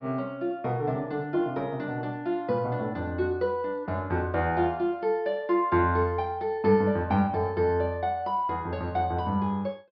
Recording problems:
low-pass filter; nothing above 5.5 kHz

